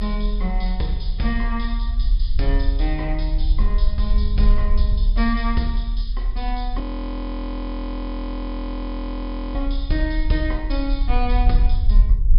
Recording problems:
treble missing; nothing above 5.5 kHz
low-frequency rumble; below 44 Hz, strongest tone 38 Hz, SNR -4 dB
frozen audio; at 7 s for 3 s

